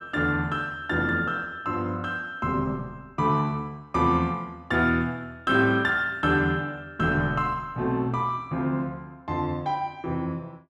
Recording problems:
none

